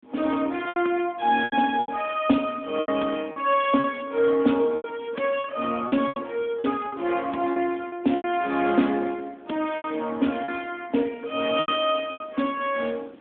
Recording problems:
phone line; 190 Hz to 3.5 kHz, AMR-NB
hiss; SNR 26 dB
packet loss; 9% of the sound replaced, filled with repeated pitch periods

